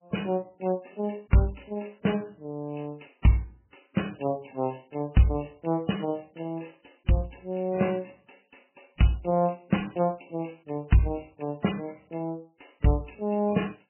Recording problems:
lossy codec; MP3, log-spectral distance 10 dB, nothing above 3 kHz

